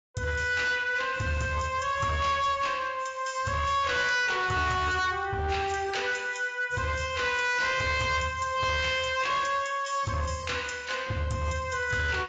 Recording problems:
lossy compression; AAC, log-spectral distance 4 dB, nothing above 7.3 kHz
distortion; hard clipping, signal-to-distortion ratio 11 dB

